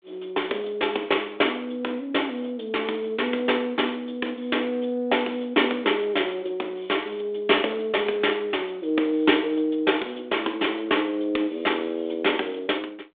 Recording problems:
phone line; 280 Hz to 3.6 kHz, G.726

